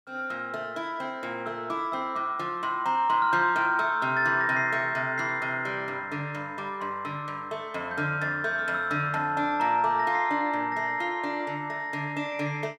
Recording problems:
none

